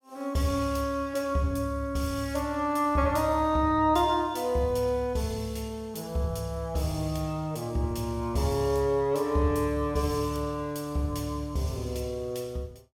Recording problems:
none

